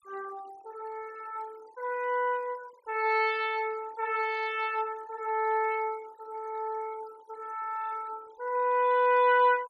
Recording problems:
denoising artefacts; signal-to-artefact ratio 22 dB

